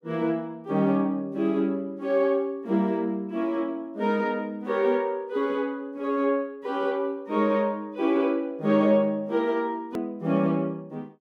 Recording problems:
click at an edit; at 10 s

